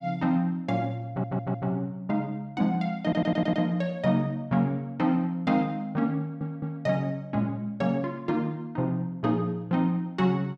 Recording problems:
audio stuttering; at 1 s, at 3 s and at 6 s

